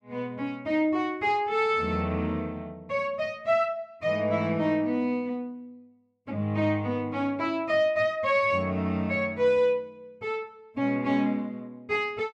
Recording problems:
none

